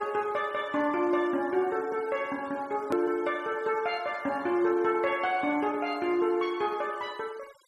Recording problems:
noise reduction artefacts; signal-to-artefact ratio 24 dB
edit click; at 3 s

